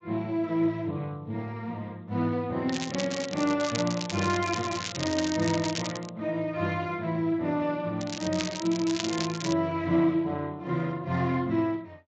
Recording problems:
lossy codec; Speex, log-spectral distance 7 dB
crackling; from 2.5 to 6 s and from 8 to 9.5 s; loose cable, SNR 7 dB

